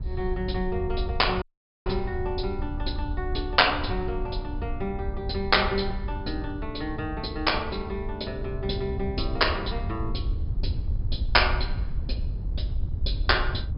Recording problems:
treble missing; nothing above 5.5 kHz
wind noise; below 82 Hz, SNR 5 dB
audio cutting out; at 1.5 s

